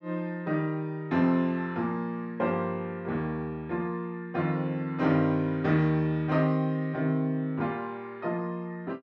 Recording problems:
none

